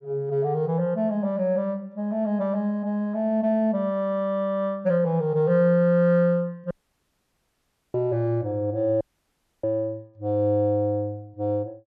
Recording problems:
audio cutting out; at 6.5 s for 1 s and at 9 s for 0.5 s

